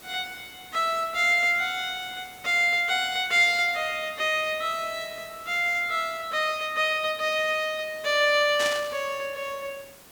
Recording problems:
background hiss; slope -3 dB per octave, SNR 22 dB
static burst; at 8.5 s; peak -2 dB vs average level

